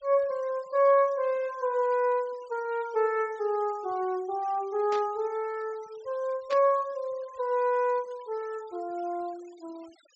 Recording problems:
treble cut off; nothing above 8 kHz
noise reduction artefacts; signal-to-artefact ratio 26 dB
static burst; at 5 s and at 6.5 s; peak -8 dB vs average level

